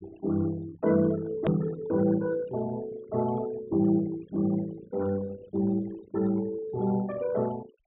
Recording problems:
treble cut off; nothing above 4 kHz
denoising artefacts; signal-to-artefact ratio 18 dB
edit click; at 1.5 s

